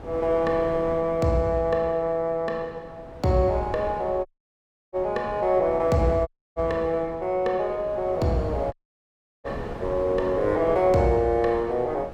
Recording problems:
wind on the microphone; below 690 Hz, SNR 14 dB
dropout; at 4.5 s for 0.5 s, at 6.5 s and at 8.5 s for 0.5 s

